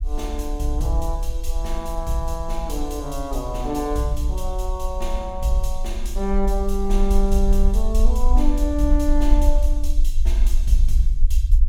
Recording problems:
rumble; below 44 Hz, strongest tone 22 Hz, SNR -2 dB

